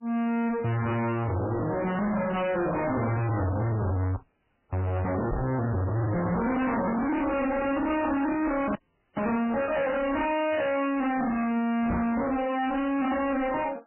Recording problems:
lossy codec; AAC, then MP3, log-spectral distance 4 dB, nothing above 2.9 kHz
distorted audio; soft clipping, signal-to-distortion ratio 6 dB
audio freezing; at 4 s for 0.5 s and at 9 s
microphone thump; at 5.5 s and at 12 s; peak +6 dB vs average level

